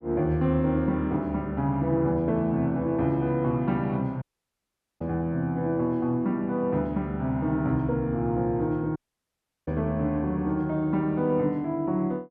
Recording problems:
audio cutting out; at 4 s for 1 s and at 9 s for 0.5 s

